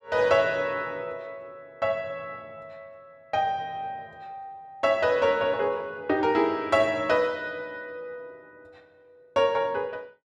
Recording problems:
none

